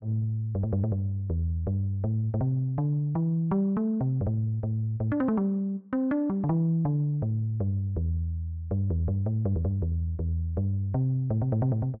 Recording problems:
none

